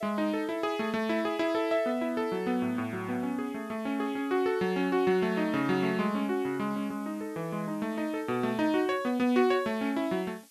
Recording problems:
hiss; slope +3 dB per octave, SNR 27 dB

